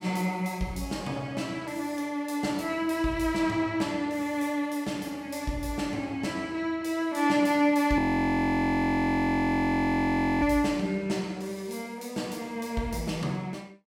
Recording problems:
audio freezing; at 8 s for 2.5 s

